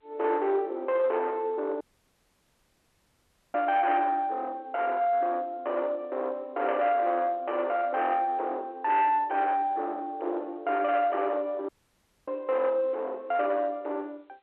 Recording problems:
telephone audio; 900 Hz to 3.5 kHz, G.711
distorted audio; soft clipping, signal-to-distortion ratio 12 dB
dropout; at 2 s for 1.5 s and at 12 s for 0.5 s

